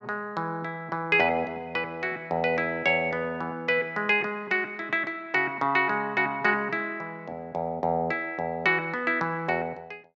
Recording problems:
none

